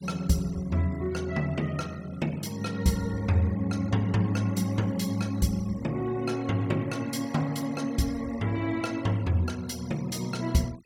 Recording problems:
denoising artefacts; signal-to-artefact ratio 22 dB

